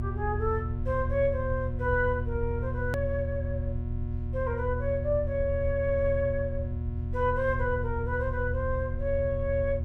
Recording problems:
electrical hum; 60 Hz, harmonics up to 720 Hz, SNR 7 dB
low-frequency rumble; below 80 Hz, strongest tone 78 Hz, SNR 4 dB
edit click; at 3 s

